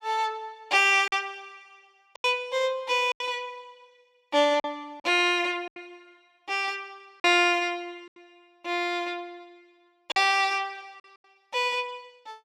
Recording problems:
packet loss; 6% of the sound replaced, filled with silence

